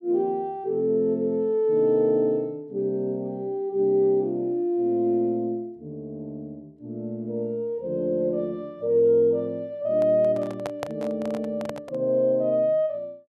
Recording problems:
handling noise; from 10 to 12 s; peak -3 dB vs average level

